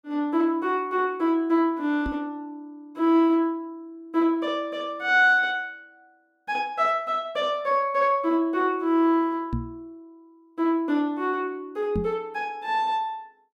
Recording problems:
microphone bump; at 2 s, at 9.5 s and at 12 s; peak 0 dB vs average level

